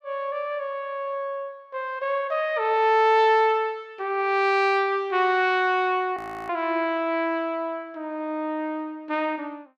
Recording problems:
audio freezing; at 6 s

